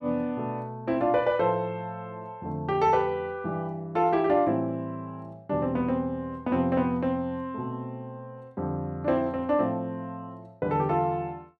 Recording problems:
none

